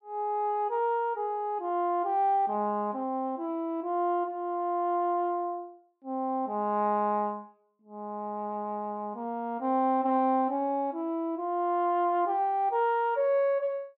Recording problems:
none

